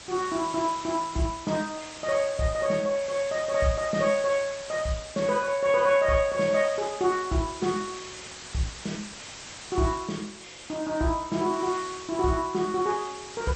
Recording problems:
lossy codec; MP2, log-spectral distance 12 dB, nothing above 7.8 kHz
hiss; slope 0 dB per octave, SNR 14 dB

